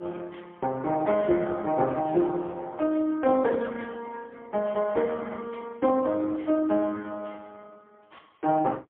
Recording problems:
telephone audio; 220 Hz to 3.5 kHz, AMR-NB, then MP3

